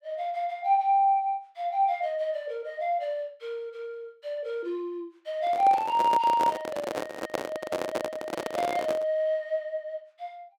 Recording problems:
handling noise; from 5.5 to 9 s; peak +2 dB vs average level

